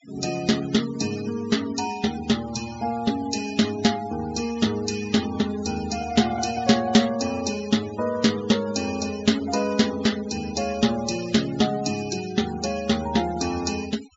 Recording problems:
low-pass filter; nothing above 8 kHz
denoising artefacts; signal-to-artefact ratio 14 dB

